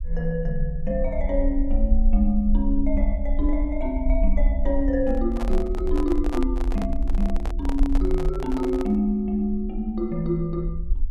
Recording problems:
rumble; below 46 Hz, strongest tone 26 Hz, SNR 2 dB
microphone handling noise; from 5 to 9 s; peak -4 dB vs average level

